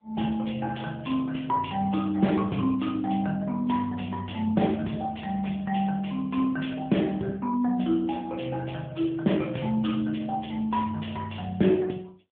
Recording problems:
telephone audio; 130 Hz to 3.4 kHz, AMR-NB

